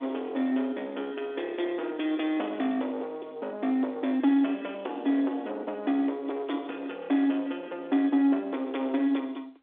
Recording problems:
phone line; 240 Hz to 3.9 kHz, G.711
distorted audio; soft clipping, signal-to-distortion ratio 10 dB

